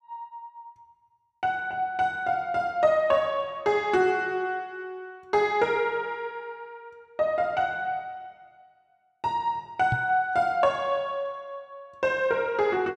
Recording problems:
microphone bump; at 10 s; peak +1 dB vs average level

